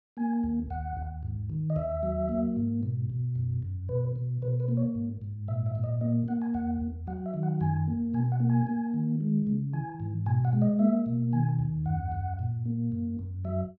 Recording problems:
none

